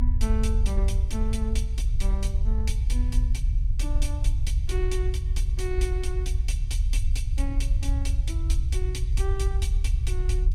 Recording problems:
low-frequency rumble; below 62 Hz, strongest tone 36 Hz, SNR -9 dB

